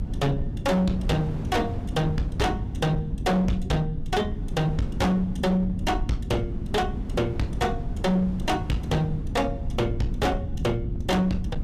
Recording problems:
distorted audio; hard clipping, uneven, signal-to-distortion ratio 7 dB
low-frequency rumble; below 160 Hz, SNR 6 dB
wind noise; below 380 Hz, SNR 17 dB

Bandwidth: 15 kHz